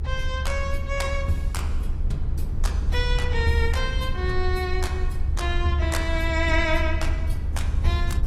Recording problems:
lossy codec; AAC, log-spectral distance 2 dB
rumble; below 74 Hz, SNR -1 dB

